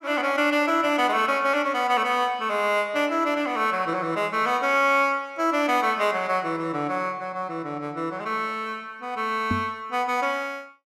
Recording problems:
microphone thump; at 9.5 s; peak +1 dB vs average level

